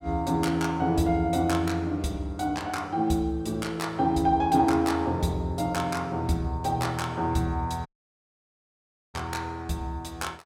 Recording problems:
audio cutting out; at 8 s for 1.5 s

